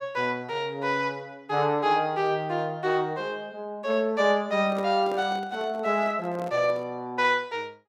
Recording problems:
microphone handling noise; from 4.5 to 7 s; peak -7 dB vs average level

